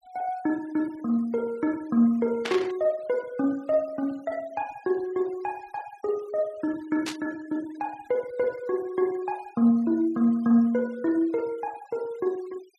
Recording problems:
noise reduction artefacts; signal-to-artefact ratio 26 dB
static burst; at 2.5 s and at 7 s; peak 0 dB vs average level

